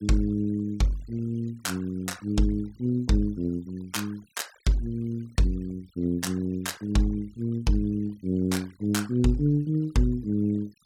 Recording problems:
denoising artefacts; signal-to-artefact ratio 27 dB

